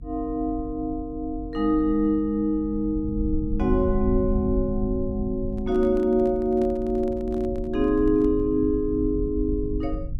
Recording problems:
rumble; below 82 Hz, SNR 10 dB
microphone handling noise; from 5.5 to 8.5 s; peak -8 dB vs average level

